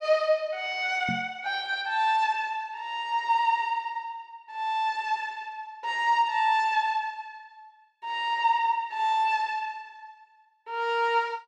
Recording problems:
microphone thump; at 1 s; peak -3 dB vs average level

